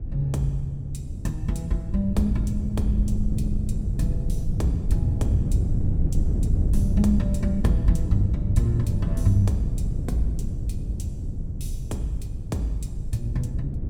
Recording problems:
wind noise; below 120 Hz, SNR 0 dB

